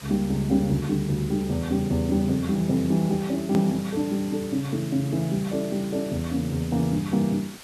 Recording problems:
hiss; slope -1 dB per octave, SNR 17 dB
hard cut with a click; at 3.5 s

